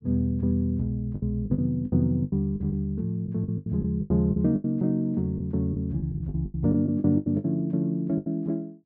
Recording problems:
packet loss; 14% of the sound replaced, filled with the last packet

